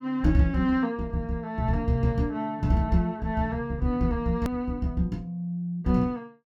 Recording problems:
edit click; at 4.5 s

